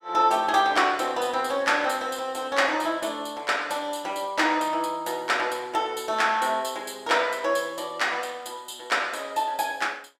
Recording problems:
none

